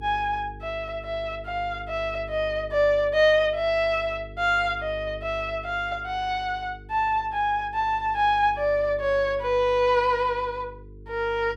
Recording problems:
electrical hum; 50 Hz, harmonics up to 450 Hz, SNR 18 dB

